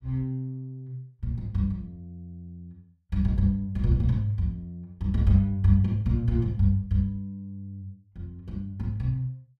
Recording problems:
none

